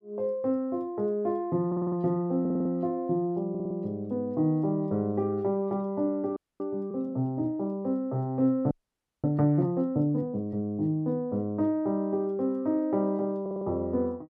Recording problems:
audio stuttering; 4 times, first at 1.5 s
audio freezing; at 6.5 s and at 8.5 s for 0.5 s

